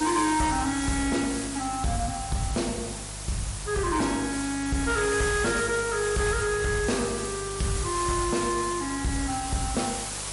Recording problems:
lossy codec; MP3, log-spectral distance 16 dB, nothing above 11 kHz
distortion; soft clipping, signal-to-distortion ratio 11 dB
hum; 50 Hz, harmonics up to 500 Hz, SNR 15 dB
hiss; slope -1 dB per octave, SNR 6 dB

